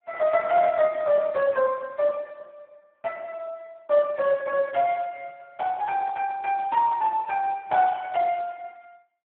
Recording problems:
phone line; 170 Hz to 2.8 kHz, Speex

